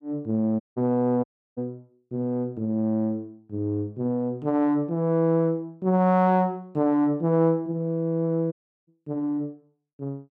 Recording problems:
audio cutting out; at 0.5 s, at 1 s and at 8.5 s

